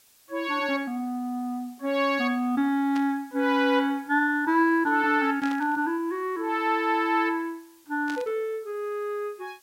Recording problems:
hiss; slope +1 dB per octave, SNR 30 dB
static burst; at 3 s, at 5.5 s and at 8 s; peak -10 dB vs average level

